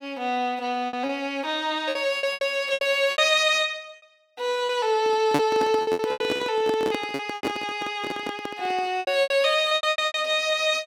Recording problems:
packet loss; 13% of the sound replaced, filled with repeated pitch periods
handling noise; from 5 to 9 s; peak +5 dB vs average level

